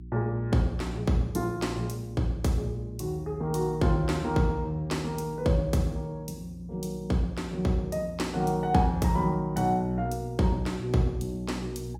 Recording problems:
hum; 60 Hz, harmonics up to 360 Hz, SNR 16 dB

